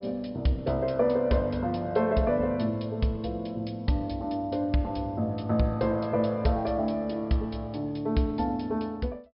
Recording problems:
treble missing; nothing above 5.5 kHz

